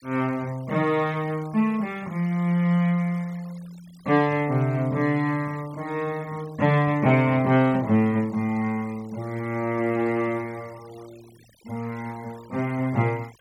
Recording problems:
denoising artefacts; signal-to-artefact ratio 25 dB

